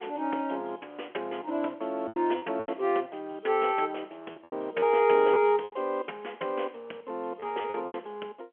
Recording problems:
telephone audio; 300 Hz to 3.3 kHz, G.711
packet loss; 7% of the sound replaced, filled with repeated pitch periods

